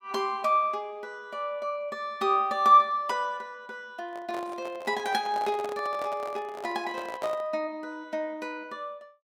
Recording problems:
microphone handling noise; from 4 to 7.5 s; peak -5 dB vs average level

